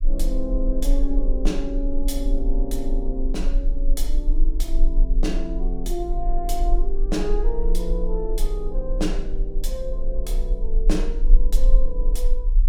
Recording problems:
low-frequency rumble; below 34 Hz, strongest tone 24 Hz, SNR -4 dB

